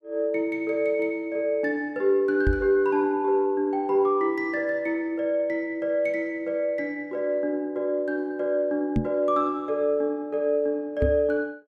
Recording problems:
microphone thump; at 2.5 s, at 9 s and at 11 s; peak +4 dB vs average level

